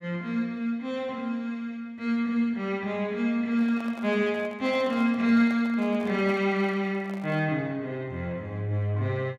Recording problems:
handling noise; from 3.5 to 7.5 s; peak -11 dB vs average level

